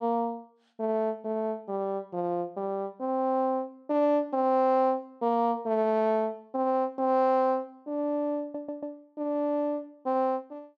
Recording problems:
audio stuttering; at 8.5 s

